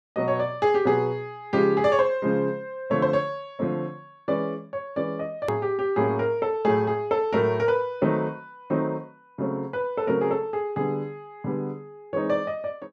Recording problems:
edit click; at 5.5 s

